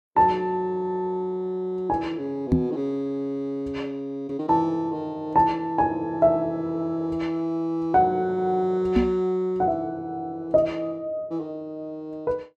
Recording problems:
microphone thump; at 2.5 s and at 9 s; peak +8 dB vs average level

